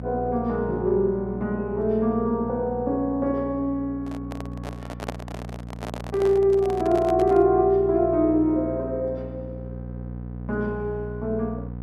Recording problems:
hum; 60 Hz, harmonics up to 780 Hz, SNR 12 dB
microphone handling noise; from 4 to 7.5 s; peak -3 dB vs average level

